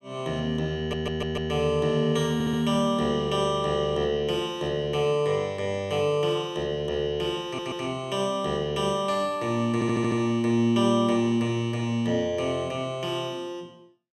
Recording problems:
stutter; 4 times, first at 1 s

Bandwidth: 14 kHz